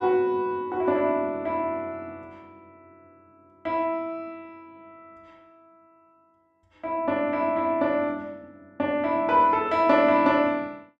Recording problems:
none

